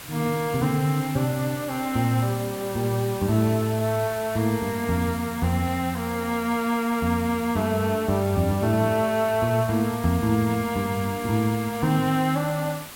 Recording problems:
background hiss; slope -1 dB per octave, SNR 14 dB

